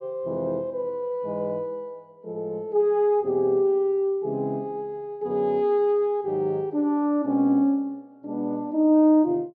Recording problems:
none

